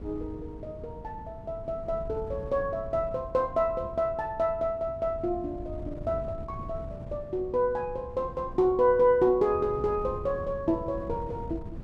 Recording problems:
wind on the microphone; below 180 Hz, SNR 14 dB

